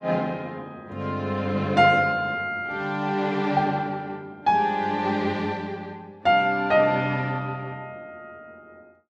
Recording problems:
none

